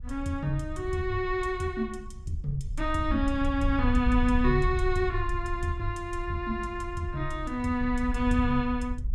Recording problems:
wind on the microphone; below 68 Hz, SNR 5 dB

